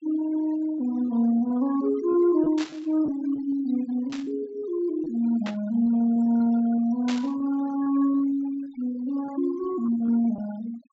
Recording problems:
low-pass filter; nothing above 7.6 kHz
denoising artefacts; signal-to-artefact ratio 19 dB
lost packets; 7% of the sound replaced, filled with repeated pitch periods
burst of static; 4 times, first at 2.5 s; peak -6 dB vs average level

